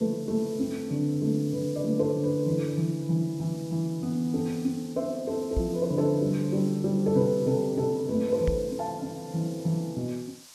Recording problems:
hiss; SNR 21 dB
knock on the microphone; at 5.5 s and at 8.5 s; peak +2 dB vs average level

